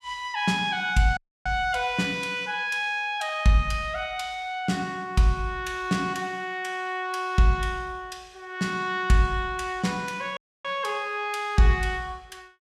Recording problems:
audio cutting out; at 1 s and at 10 s

